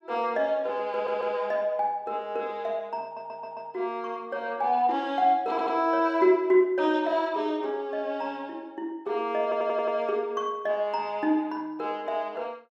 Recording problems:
stutter; 4 times, first at 1 s

